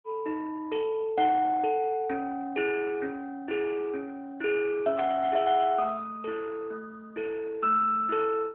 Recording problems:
telephone audio; 280 Hz to 3.6 kHz, AMR-NB
burst of static; at 5 s; peak -7 dB vs average level

